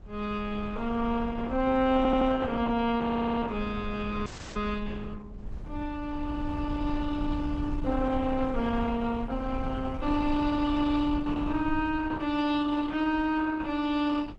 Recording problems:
lossy compression; Opus, log-spectral distance 3 dB, nothing above 8 kHz
wind on the microphone; below 84 Hz, SNR 12 dB
audio stuttering; at 2 s and at 3 s
frozen audio; at 4.5 s

